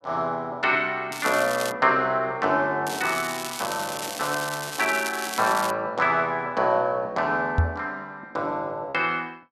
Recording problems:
packet loss; 0.6% of the sound replaced, filled with repeated pitch periods
crackle; at 1 s and from 3 to 5.5 s; loose cable, SNR 9 dB
microphone bump; at 7.5 s; peak +7 dB vs average level

